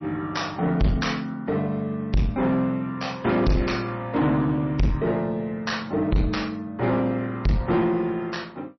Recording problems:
lossy compression; MP3, log-spectral distance 2 dB, nothing above 5.8 kHz
distorted audio; soft clipping, signal-to-distortion ratio 7 dB

